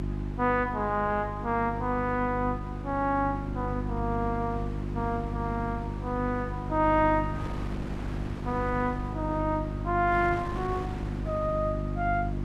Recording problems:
hum; 50 Hz, harmonics up to 350 Hz, SNR 6 dB
wind noise; below 640 Hz, SNR 13 dB

